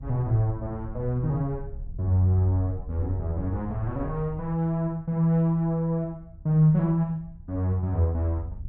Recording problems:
wind on the microphone; below 92 Hz, SNR 15 dB

